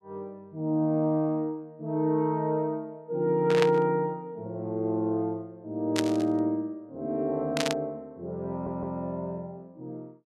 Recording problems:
burst of static; at 3.5 s, at 6 s and at 7.5 s; peak +4 dB vs average level
audio stuttering; at 8.5 s

